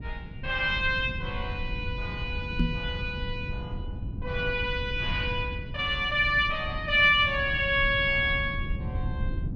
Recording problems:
rumble; below 130 Hz, SNR 9 dB
microphone thump; at 2.5 s; peak +4 dB vs average level

